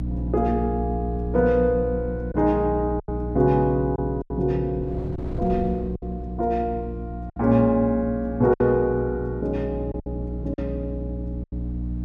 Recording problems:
hum; 60 Hz, harmonics up to 300 Hz, SNR 8 dB
wind on the microphone; below 210 Hz, SNR 19 dB
lost packets; 5% of the sound replaced, filled with silence

